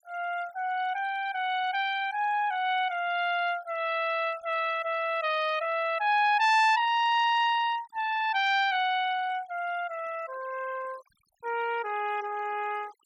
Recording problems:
denoising artefacts; signal-to-artefact ratio 22 dB

